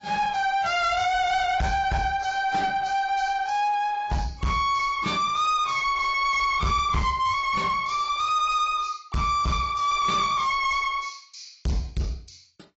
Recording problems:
lossy compression; AAC, log-spectral distance 4 dB, nothing above 7.6 kHz
distortion; soft clipping, signal-to-distortion ratio 11 dB

